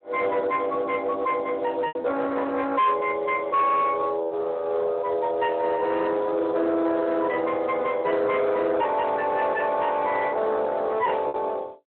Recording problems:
phone line; 300 Hz to 3.1 kHz, Speex
distorted audio; soft clipping, signal-to-distortion ratio 11 dB
lost packets; 1.4% of the sound replaced, filled with repeated pitch periods

